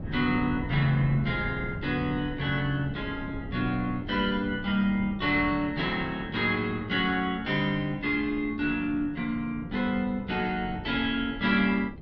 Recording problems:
wind noise; below 250 Hz, SNR 13 dB

